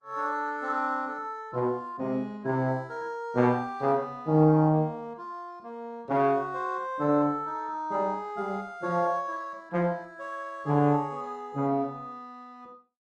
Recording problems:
lossy compression; Opus, log-spectral distance 2 dB, nothing above 11 kHz

